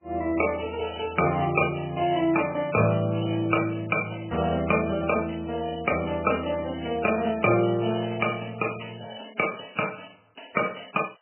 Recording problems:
codec artefacts; MP3, log-spectral distance 11 dB, nothing above 2.4 kHz

